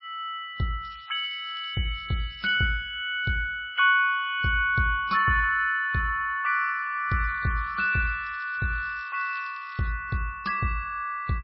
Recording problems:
codec artefacts; MP3, log-spectral distance 3 dB, nothing above 5.3 kHz
crackling; from 1 to 2.5 s and from 7 to 10 s; loose cable, SNR 27 dB

